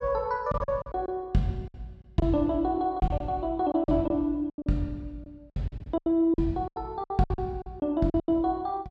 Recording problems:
packet loss; 14% of the sound replaced, filled with silence

